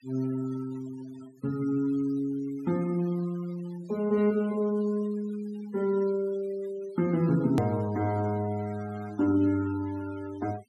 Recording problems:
denoising artefacts; signal-to-artefact ratio 20 dB
edit click; at 7.5 s

